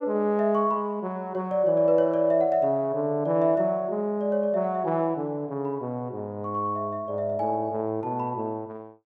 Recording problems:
none

